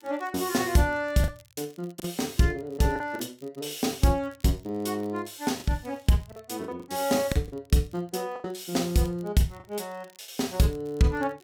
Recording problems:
crackle; vinyl, SNR 29 dB
packet loss; 5% of the sound replaced, filled with the last packet

